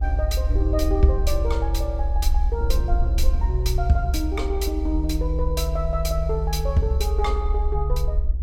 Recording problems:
rumble; below 64 Hz, SNR -2 dB
wind on the microphone; below 240 Hz, SNR 17 dB

